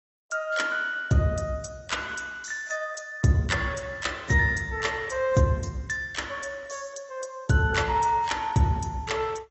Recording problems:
lossy codec; AAC, log-spectral distance 4 dB, nothing above 8 kHz

